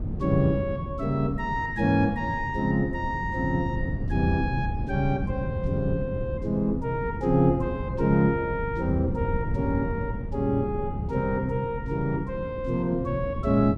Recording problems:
wind noise; below 180 Hz, SNR 6 dB

